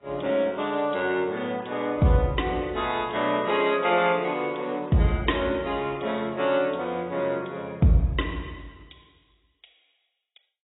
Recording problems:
lossy codec; AAC, log-spectral distance 4 dB, nothing above 3.8 kHz

